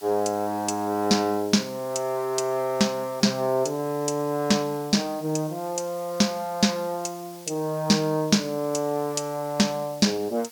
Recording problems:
hiss; slope +2 dB per octave, SNR 20 dB

